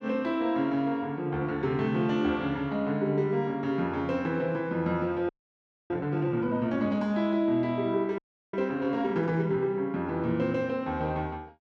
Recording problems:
frozen audio; at 5.5 s for 0.5 s and at 8 s

